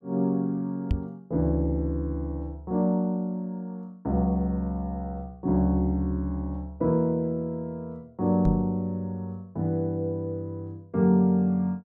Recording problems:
knock on the microphone; at 1 s and at 8.5 s; peak +5 dB vs average level

